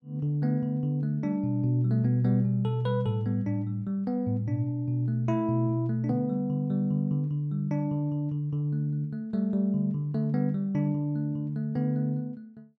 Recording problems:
none

